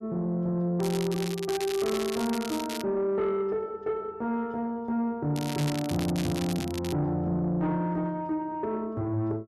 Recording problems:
distorted audio; soft clipping, signal-to-distortion ratio 11 dB
crackle; from 1 to 3 s and from 5.5 to 7 s; loose cable, SNR 9 dB

